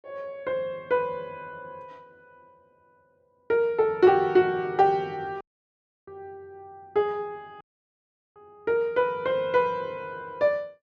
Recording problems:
audio cutting out; at 5.5 s for 0.5 s and at 7.5 s for 0.5 s

